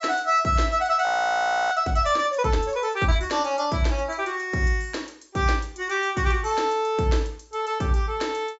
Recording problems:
treble cut off; nothing above 8 kHz
audio freezing; at 1 s for 0.5 s

